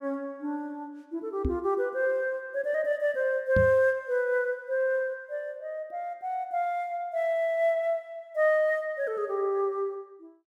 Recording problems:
microphone thump; at 1.5 s and at 3.5 s; peak +3 dB vs average level

